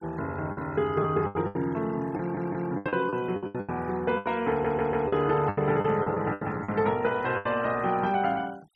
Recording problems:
noise reduction artefacts; signal-to-artefact ratio 23 dB
packet loss; 14% of the sound replaced, filled with the last packet
audio stuttering; at 2 s and at 4.5 s

